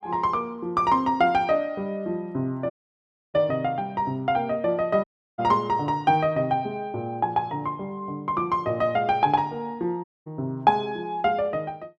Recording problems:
dropout; at 2.5 s for 0.5 s, at 5 s and at 10 s

